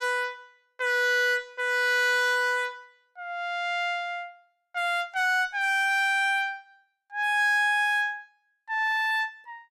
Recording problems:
distortion; hard clipping, signal-to-distortion ratio 8 dB

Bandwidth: 14.5 kHz